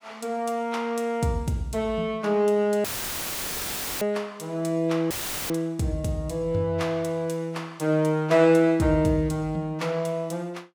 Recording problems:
audio cutting out; at 3 s for 1 s and at 5 s; filled with static

